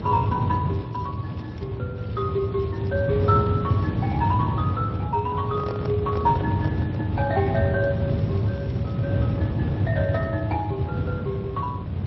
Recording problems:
lossy compression; MP3, then Speex, log-spectral distance 2 dB
rumble; below 190 Hz, SNR -2 dB
crackle; at 0.5 s, from 2 to 4 s and from 8 to 9 s; loose cable, SNR 26 dB
microphone handling noise; from 5.5 to 7 s; peak -1 dB vs average level

